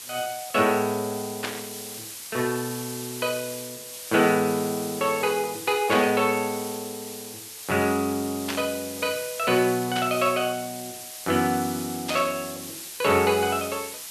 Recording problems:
hiss; slope +2 dB per octave, SNR 10 dB
burst of static; 5 times, first at 1.5 s; peak 0 dB vs average level

